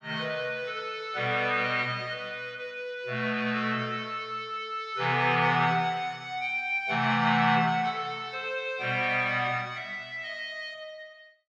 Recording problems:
none

